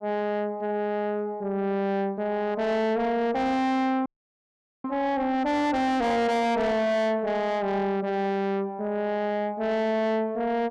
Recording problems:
distortion; soft clipping, signal-to-distortion ratio 6 dB
frozen audio; at 4 s for 1 s

